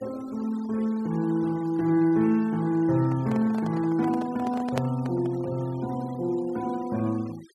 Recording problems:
noise reduction artefacts; signal-to-artefact ratio 23 dB
handling noise; from 3 to 5.5 s; peak 0 dB vs average level

